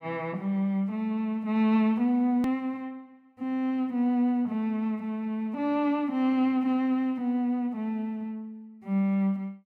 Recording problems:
click at an edit; at 2.5 s

